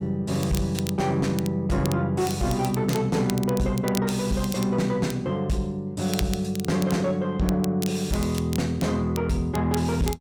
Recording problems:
distorted audio; soft clipping, signal-to-distortion ratio 12 dB
crackling; vinyl, SNR 14 dB

